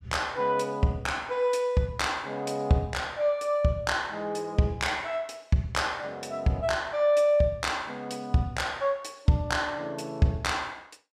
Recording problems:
none

